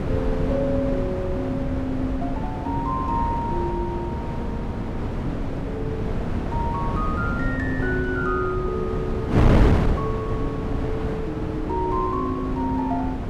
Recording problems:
wind noise; below 320 Hz, SNR -2 dB

